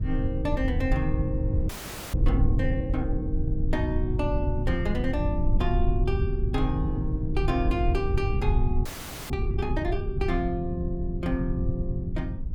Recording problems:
rumble; below 94 Hz, SNR -1 dB
wind on the microphone; below 180 Hz, SNR 12 dB
audio freezing; at 1.5 s and at 9 s

